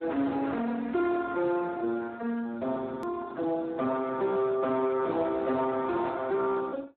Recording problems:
telephone audio; 190 Hz to 2 kHz, Speex
distorted audio; soft clipping, signal-to-distortion ratio 10 dB
hard cut with a click; at 3 s

